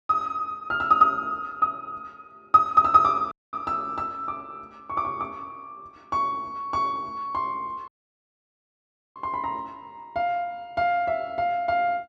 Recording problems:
dropout; at 3.5 s and at 8 s for 1.5 s

